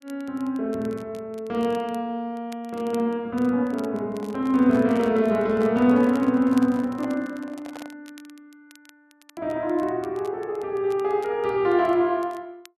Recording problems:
crackling; vinyl, SNR 28 dB
microphone handling noise; from 4 to 8 s; peak -10 dB vs average level

